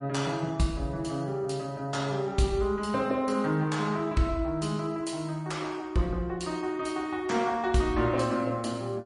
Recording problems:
lossy compression; MP3, log-spectral distance 2 dB, nothing above 10.4 kHz

